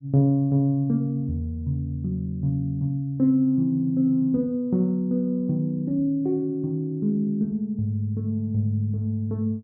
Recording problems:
none

